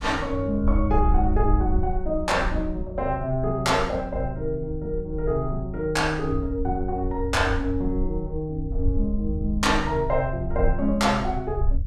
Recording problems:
low-frequency rumble; below 64 Hz, SNR 5 dB

